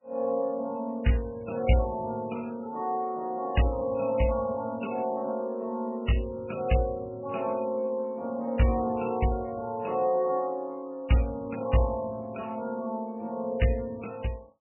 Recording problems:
lossy codec; MP3, log-spectral distance 2 dB, nothing above 2.9 kHz

